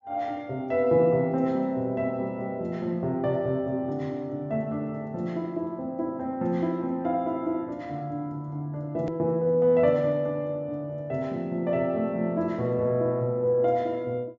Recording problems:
low-pass filter; nothing above 8 kHz
hard cut with a click; at 9 s

